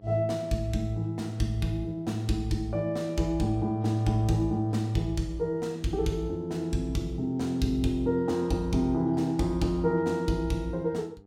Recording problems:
hum; 50 Hz, harmonics up to 1.2 kHz, SNR 28 dB

